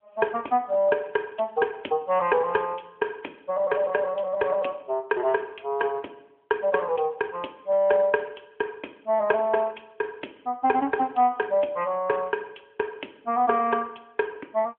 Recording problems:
phone line; 260 Hz to 3.2 kHz, AMR-NB

